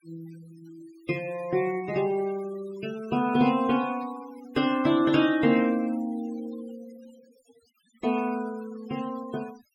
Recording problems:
denoising artefacts; signal-to-artefact ratio 20 dB

